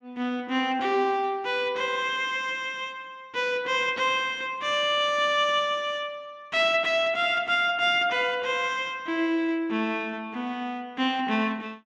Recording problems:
none

